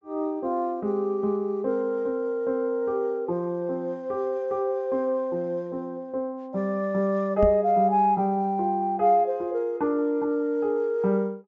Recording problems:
treble missing; nothing above 8 kHz
knock on the microphone; at 7.5 s; peak +2 dB vs average level

